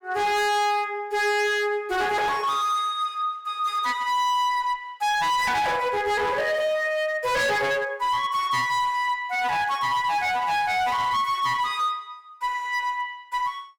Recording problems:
distorted audio; hard clipping, signal-to-distortion ratio 7 dB

